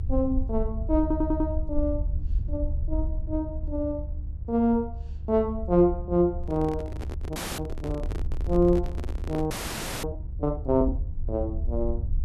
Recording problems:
electrical hum; 50 Hz, harmonics up to 500 Hz, SNR 17 dB
rumble; below 72 Hz, SNR 6 dB
stutter; at 1 s
handling noise; from 6.5 to 9.5 s; peak -4 dB vs average level
audio freezing; at 7.5 s and at 9.5 s for 0.5 s

